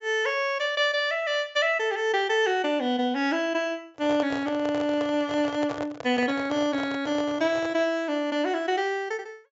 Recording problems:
low-pass filter; nothing above 8 kHz
handling noise; from 4 to 8 s; peak -5 dB vs average level

